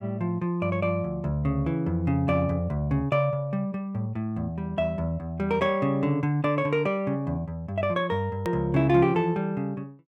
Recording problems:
edit click; at 8.5 s

